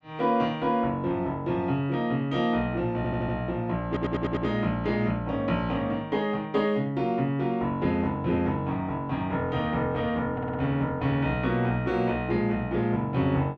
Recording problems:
stutter; at 3 s, at 4 s and at 10 s

